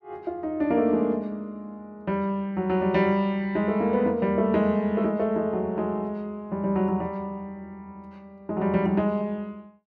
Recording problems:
none

